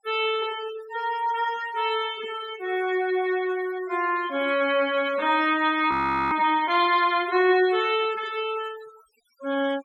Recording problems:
denoising artefacts; signal-to-artefact ratio 17 dB
frozen audio; at 6 s

